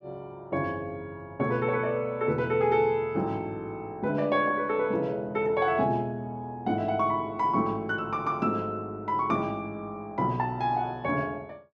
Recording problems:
none

